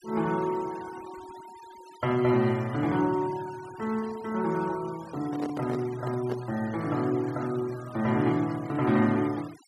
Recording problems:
denoising artefacts; signal-to-artefact ratio 19 dB
handling noise; from 5 to 6.5 s; peak -3 dB vs average level

